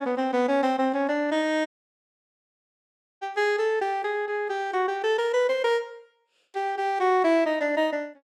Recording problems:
audio cutting out; at 1.5 s for 1.5 s

